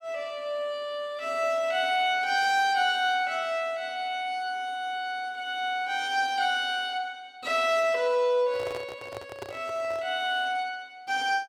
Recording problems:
handling noise; from 8.5 to 10 s; peak -6 dB vs average level

